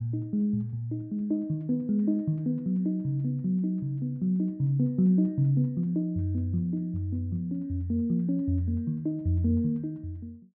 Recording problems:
none

